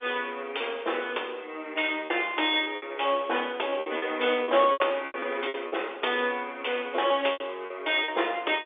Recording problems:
telephone audio; 320 Hz to 3.6 kHz, G.711
packet loss; 9% of the sound replaced, filled with repeated pitch periods

